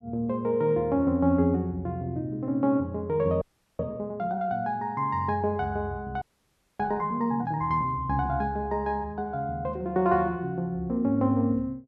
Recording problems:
audio freezing; at 3.5 s and at 6 s for 0.5 s

